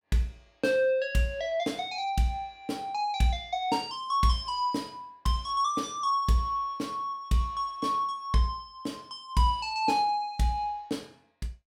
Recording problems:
none

